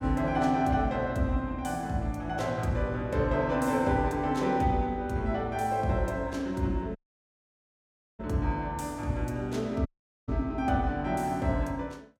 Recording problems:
dropout; at 7 s for 1 s and at 10 s

